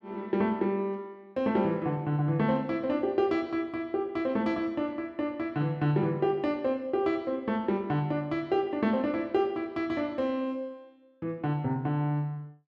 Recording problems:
none

